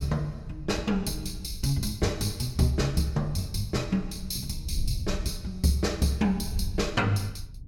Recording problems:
wind on the microphone; below 90 Hz, SNR 10 dB

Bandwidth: 17 kHz